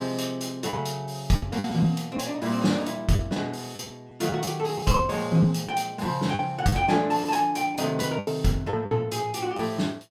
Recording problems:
lost packets; 7% of the sound replaced, filled with the last packet

